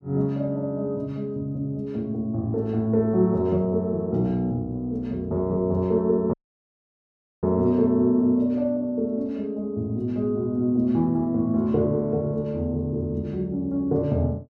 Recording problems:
dropout; at 6.5 s for 1 s

